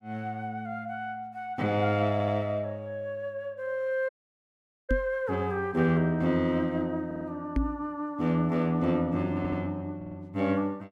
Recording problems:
audio stuttering; 4 times, first at 2 s
audio cutting out; at 4 s for 1 s
knock on the microphone; at 5 s and at 7.5 s; peak +5 dB vs average level

